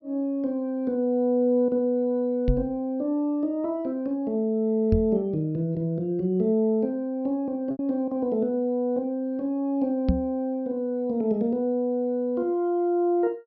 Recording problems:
treble missing; nothing above 5.9 kHz
lost packets; 0.7% of the sound replaced, filled with repeated pitch periods
microphone bump; at 2.5 s, at 5 s and at 10 s; peak +6 dB vs average level

